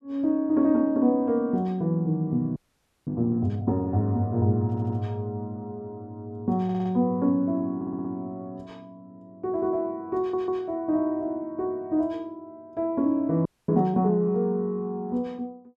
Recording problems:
frozen audio; at 2.5 s for 0.5 s and at 13 s
audio stuttering; 4 times, first at 4.5 s

